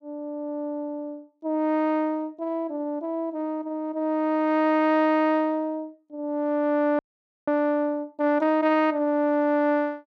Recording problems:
frozen audio; at 7 s

